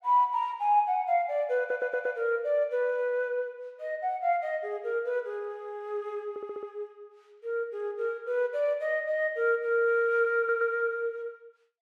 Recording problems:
audio stuttering; at 1.5 s, at 6.5 s and at 10 s

